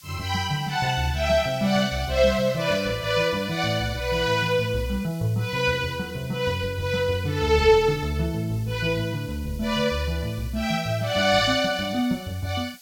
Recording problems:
background hiss; slope +4 dB per octave, SNR 23 dB

